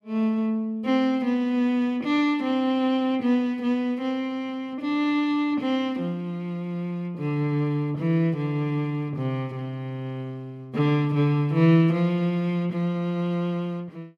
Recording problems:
none

